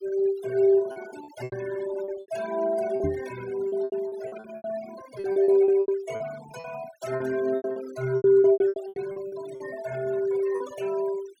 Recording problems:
noise reduction artefacts; signal-to-artefact ratio 17 dB
packet loss; 15% of the sound replaced, filled with repeated pitch periods
microphone thump; at 3 s; peak 0 dB vs average level

